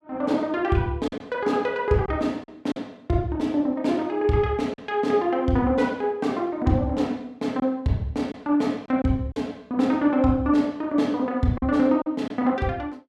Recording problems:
packet loss; 3% of the sound replaced, filled with silence

